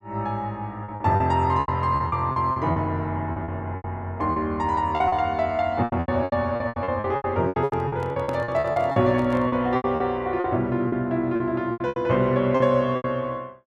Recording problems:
lost packets; 16% of the sound replaced, filled with repeated pitch periods
handling noise; from 7.5 to 9.5 s; peak -8 dB vs average level

